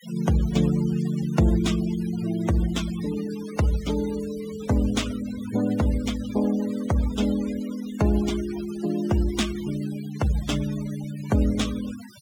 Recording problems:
denoising artefacts; signal-to-artefact ratio 16 dB

